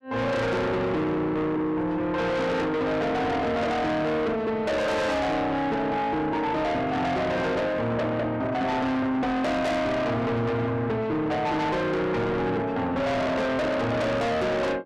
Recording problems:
distortion; soft clipping, signal-to-distortion ratio 6 dB

